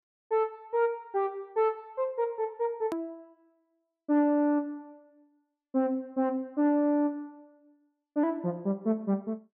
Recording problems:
treble missing; nothing above 5.5 kHz
click at an edit; at 3 s

